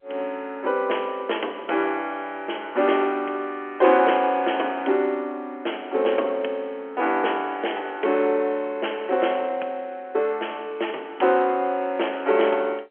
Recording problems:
telephone audio; 280 Hz to 3.3 kHz, G.711

